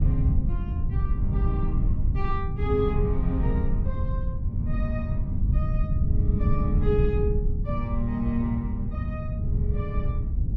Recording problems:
low-frequency rumble; below 110 Hz, SNR -3 dB
wind noise; below 110 Hz, SNR 0 dB

